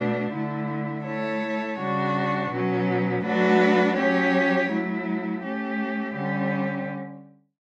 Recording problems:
none

